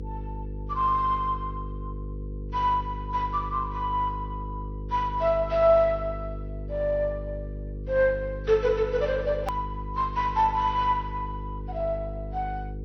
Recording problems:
codec artefacts; MP2, then AAC, log-spectral distance 2 dB
electrical hum; 50 Hz, harmonics up to 500 Hz, SNR 10 dB
hard cut with a click; at 9.5 s

